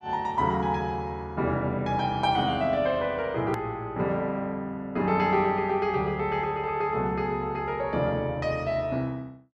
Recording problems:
click at an edit; at 3.5 s

